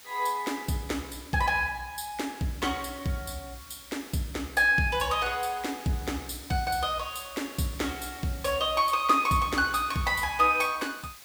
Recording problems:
background hiss; slope +1 dB per octave, SNR 19 dB

